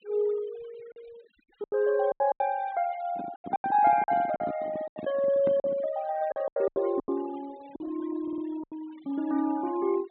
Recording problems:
low-pass filter; nothing above 4 kHz
denoising artefacts; signal-to-artefact ratio 22 dB
packet loss; 11% of the sound replaced, filled with silence
handling noise; from 3 to 6 s; peak -2 dB vs average level
stutter; at 8 s

